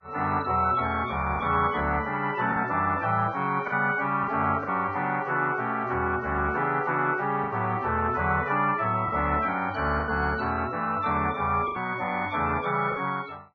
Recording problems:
lossy compression; Vorbis, log-spectral distance 3 dB
packet loss; 4% of the sound replaced, filled with the last packet

